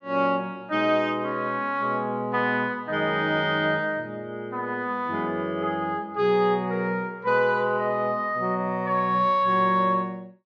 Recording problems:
none

